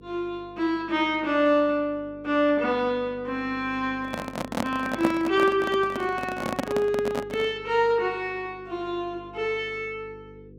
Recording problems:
hum; 50 Hz, harmonics up to 500 Hz, SNR 22 dB
handling noise; from 4 to 7.5 s; peak +4 dB vs average level

